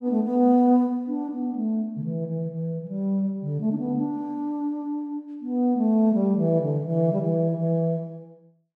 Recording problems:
none

